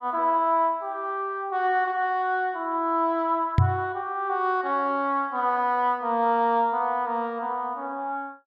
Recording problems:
knock on the microphone; at 3.5 s; peak +8 dB vs average level

